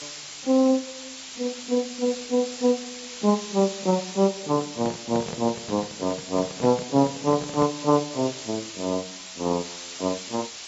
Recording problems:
lossy compression; AAC, log-spectral distance 20 dB
hiss; slope +2 dB per octave, SNR 11 dB
microphone handling noise; from 4.5 to 8 s; peak -3 dB vs average level

